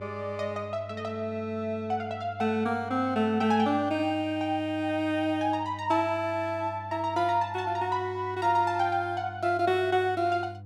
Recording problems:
electrical hum; 50 Hz, harmonics up to 500 Hz, SNR 16 dB

